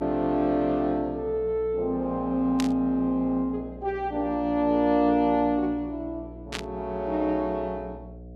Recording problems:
electrical hum; 60 Hz, harmonics up to 720 Hz, SNR 18 dB
static burst; at 2.5 s and at 6.5 s; peak -1 dB vs average level

